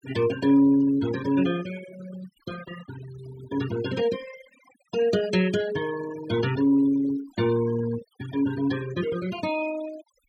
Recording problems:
noise reduction artefacts; signal-to-artefact ratio 14 dB

